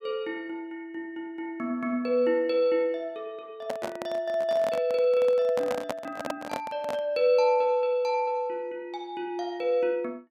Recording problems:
microphone handling noise; from 3.5 to 7 s; peak 0 dB vs average level

